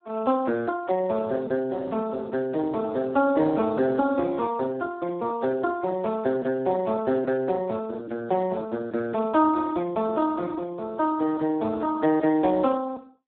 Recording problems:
telephone audio; 190 Hz to 2 kHz, Speex

